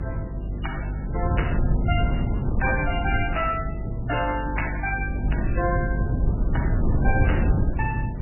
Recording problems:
lossy compression; MP3, log-spectral distance 4 dB, nothing above 2.4 kHz
electrical hum; 50 Hz, harmonics up to 400 Hz, SNR 2 dB
low-frequency rumble; below 150 Hz, SNR -2 dB
wind noise; below 150 Hz, SNR 13 dB

